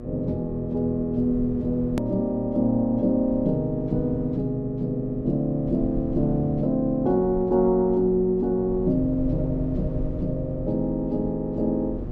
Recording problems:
electrical hum; 60 Hz, harmonics up to 1.2 kHz, SNR 15 dB
low-frequency rumble; below 88 Hz, SNR 14 dB
hard cut with a click; at 2 s

